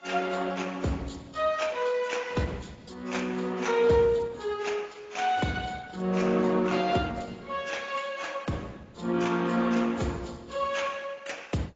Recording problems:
lossy codec; Opus, then AAC, log-spectral distance 5 dB, nothing above 7.3 kHz

